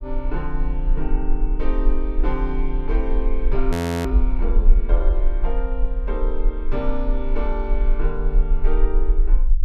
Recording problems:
rumble; below 38 Hz, strongest tone 24 Hz, SNR -5 dB
frozen audio; at 3.5 s

